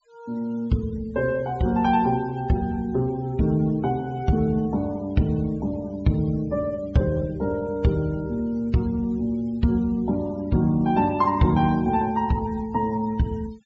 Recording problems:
treble cut off; nothing above 8 kHz
denoising artefacts; signal-to-artefact ratio 26 dB

